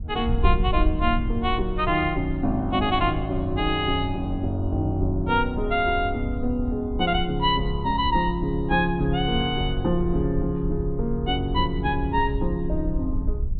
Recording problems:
treble cut off; nothing above 4 kHz
wind noise; below 68 Hz, SNR 7 dB

